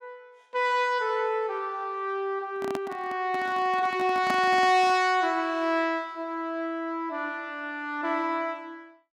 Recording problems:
microphone handling noise; from 2.5 to 5 s; peak -1 dB vs average level

